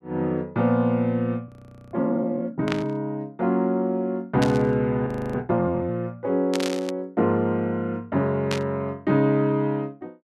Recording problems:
audio freezing; at 1.5 s and at 5 s
static burst; 4 times, first at 2.5 s; peak 0 dB vs average level

